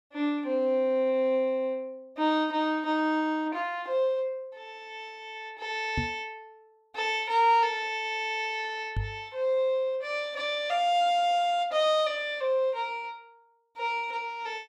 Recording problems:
microphone bump; at 6 s and at 9 s; peak +1 dB vs average level

